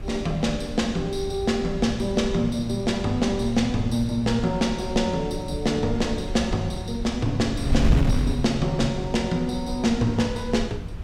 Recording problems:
wind on the microphone; below 110 Hz, SNR 7 dB

